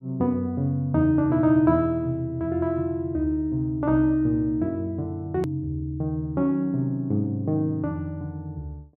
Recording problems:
click at an edit; at 5.5 s

